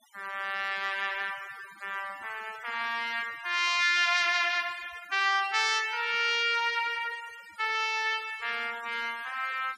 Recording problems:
noise reduction artefacts; signal-to-artefact ratio 21 dB

